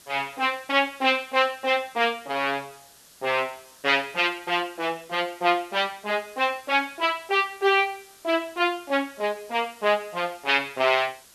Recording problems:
hiss; slope 0 dB per octave, SNR 25 dB

